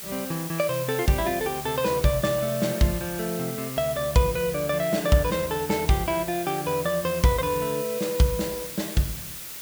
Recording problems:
background hiss; slope +1 dB per octave, SNR 9 dB

